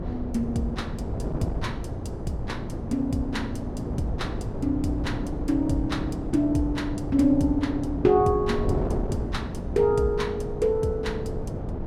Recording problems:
wind noise; below 340 Hz, SNR 5 dB

